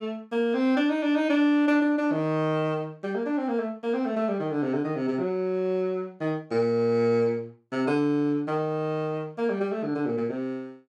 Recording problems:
none

